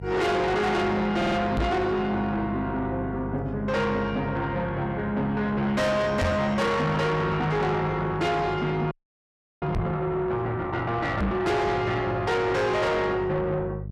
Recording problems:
distortion; soft clipping, signal-to-distortion ratio 6 dB
hum; 50 Hz, harmonics up to 450 Hz, SNR 12 dB
stutter; at 1 s
knock on the microphone; 4 times, first at 1.5 s; peak +4 dB vs average level
audio freezing; at 9 s for 0.5 s

